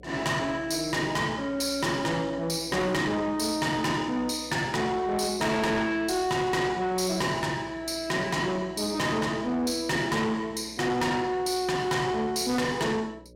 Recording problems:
distortion; soft clipping, signal-to-distortion ratio 7 dB
mains hum; 60 Hz, harmonics up to 600 Hz, SNR 24 dB

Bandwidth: 16.5 kHz